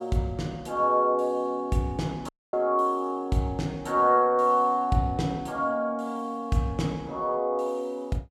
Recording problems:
dropout; at 2.5 s

